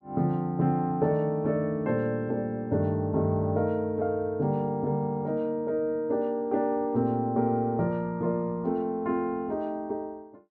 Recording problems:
none

